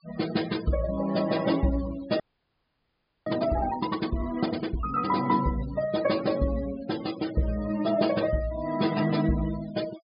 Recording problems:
treble cut off; nothing above 5 kHz
denoising artefacts; signal-to-artefact ratio 14 dB
frozen audio; at 2 s for 1 s

